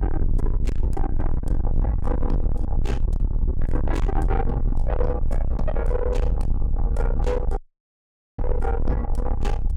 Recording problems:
distortion; soft clipping, signal-to-distortion ratio 5 dB
rumble; below 60 Hz, strongest tone 22 Hz, SNR -3 dB
audio cutting out; at 7.5 s for 1 s

